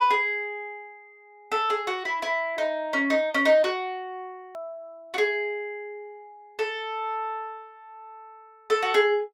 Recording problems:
hard cut with a click; at 4.5 s

